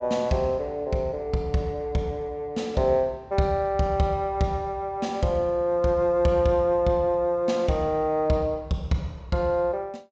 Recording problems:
treble cut off; nothing above 8 kHz

